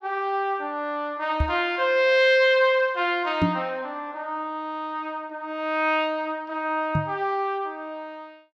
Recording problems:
microphone bump; at 1.5 s, at 3.5 s and at 7 s; peak +5 dB vs average level

